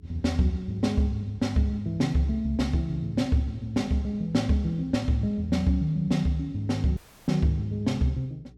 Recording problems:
hum; 60 Hz, harmonics up to 420 Hz, SNR 26 dB
audio cutting out; at 7 s

